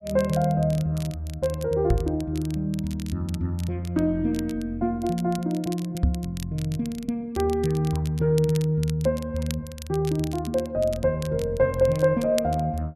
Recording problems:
crackling; vinyl, SNR 18 dB
knock on the microphone; at 2 s and at 6 s; peak +7 dB vs average level

